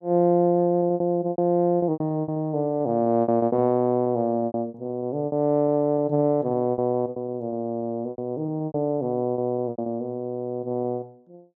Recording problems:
packet loss; 15% of the sound replaced, filled with repeated pitch periods

